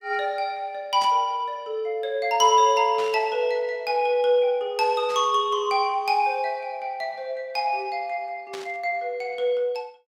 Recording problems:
burst of static; 4 times, first at 1 s; peak -9 dB vs average level

